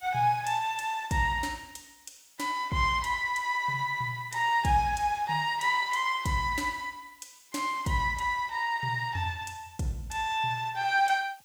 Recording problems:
background hiss; slope +2 dB per octave, SNR 29 dB

